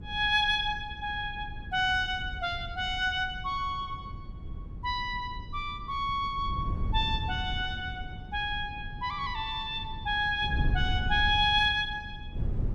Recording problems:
wind noise; below 110 Hz, SNR 9 dB

